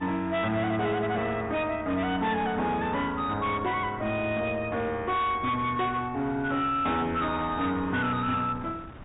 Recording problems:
low-pass filter; nothing above 4 kHz
distorted audio; hard clipping, signal-to-distortion ratio 12 dB
wind on the microphone; below 930 Hz, SNR 19 dB

